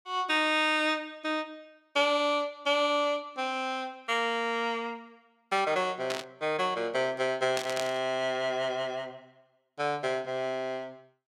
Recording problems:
burst of static; at 6 s and at 7.5 s; peak 0 dB vs average level

